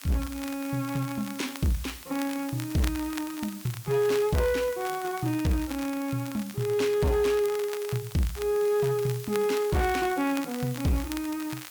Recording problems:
distorted audio; hard clipping, uneven, signal-to-distortion ratio 12 dB
hiss; slope +1 dB per octave, SNR 16 dB
crackle; vinyl, SNR 15 dB

